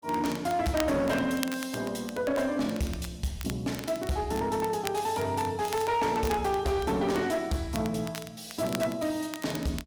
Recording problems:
distorted audio; hard clipping, uneven, signal-to-distortion ratio 11 dB
crackle; vinyl, SNR 14 dB

